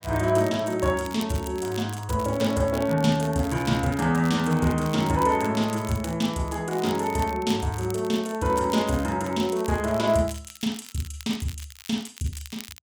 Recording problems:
crackle; vinyl, SNR 18 dB

